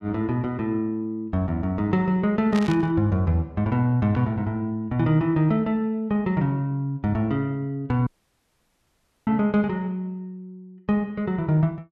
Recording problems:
burst of static; at 2.5 s; peak -6 dB vs average level
audio cutting out; at 8 s for 1 s

